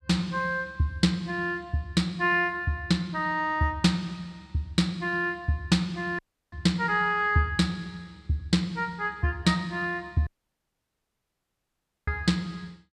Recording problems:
dropout; at 6 s and at 10 s for 2 s

